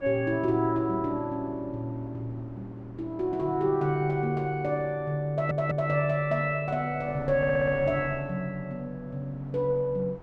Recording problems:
wind noise; below 690 Hz, SNR 20 dB
audio stuttering; at 5.5 s and at 7.5 s

